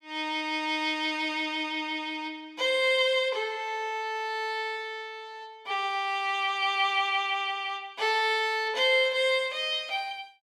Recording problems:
none

